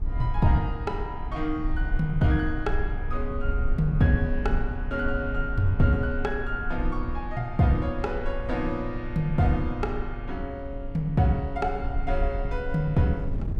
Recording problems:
low-frequency rumble; below 56 Hz, SNR 6 dB
wind noise; below 170 Hz, SNR 16 dB

